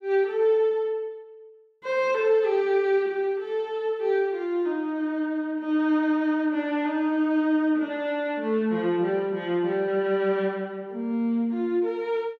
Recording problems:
none

